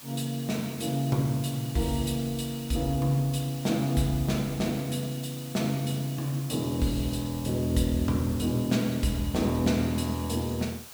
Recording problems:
hiss; slope 0 dB per octave, SNR 15 dB

